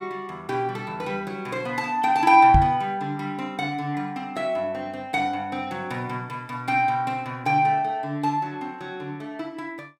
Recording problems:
microphone bump; at 2.5 s; peak +7 dB vs average level

